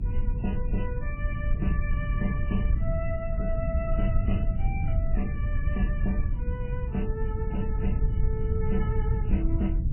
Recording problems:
codec artefacts; MP3, then MP3, log-spectral distance 2 dB, nothing above 2.7 kHz
low-frequency rumble; below 88 Hz, SNR -6 dB

